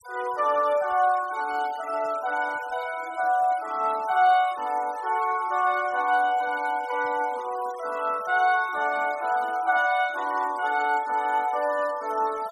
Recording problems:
denoising artefacts; signal-to-artefact ratio 21 dB

